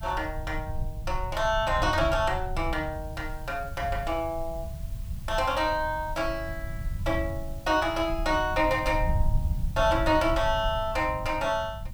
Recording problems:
hiss; slope -1 dB per octave, SNR 25 dB
rumble; below 92 Hz, SNR 7 dB

